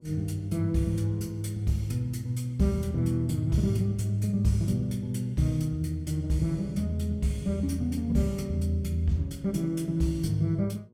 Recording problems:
electrical hum; 60 Hz, harmonics up to 1.1 kHz, SNR 32 dB

